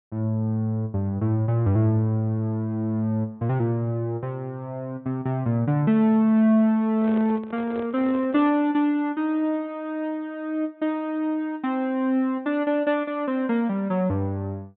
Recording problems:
treble missing; nothing above 4 kHz
microphone handling noise; from 7 to 8.5 s; peak -8 dB vs average level

